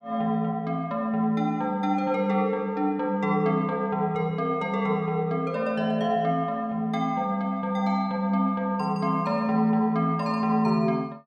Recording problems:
none

